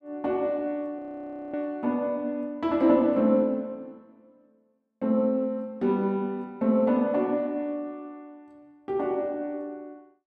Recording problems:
frozen audio; at 1 s for 0.5 s

